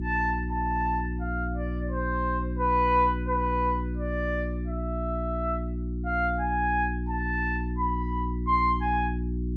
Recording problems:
hum; 60 Hz, harmonics up to 360 Hz, SNR 3 dB

